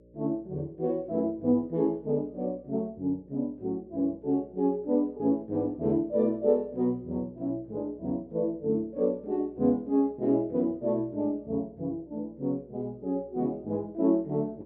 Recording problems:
electrical hum; 60 Hz, harmonics up to 600 Hz, SNR 27 dB

